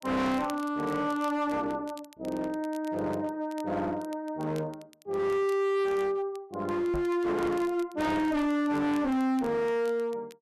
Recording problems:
distortion; hard clipping, signal-to-distortion ratio 8 dB
crackling; vinyl, SNR 25 dB
microphone bump; at 7 s; peak -2 dB vs average level

